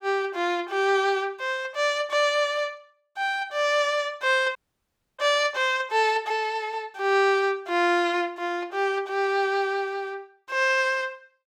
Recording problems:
dropout; at 4.5 s for 0.5 s

